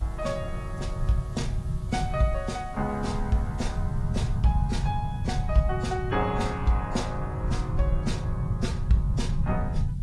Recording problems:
lossy codec; AAC, log-spectral distance 2 dB
hiss; slope +1 dB per octave, SNR 28 dB
low-frequency rumble; below 140 Hz, SNR 1 dB

